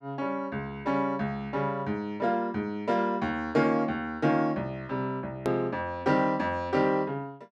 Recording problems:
hard cut with a click; at 5.5 s

